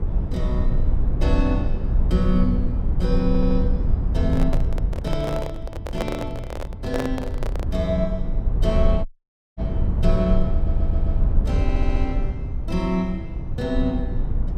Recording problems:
hum; 50 Hz, harmonics up to 300 Hz, SNR 23 dB
rumble; below 76 Hz, SNR -2 dB
audio stuttering; at 3.5 s, at 11 s and at 12 s
microphone handling noise; from 4 to 8 s; peak +4 dB vs average level
audio cutting out; at 9 s for 0.5 s

